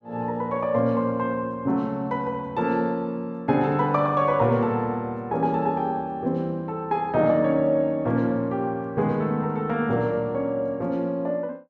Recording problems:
none

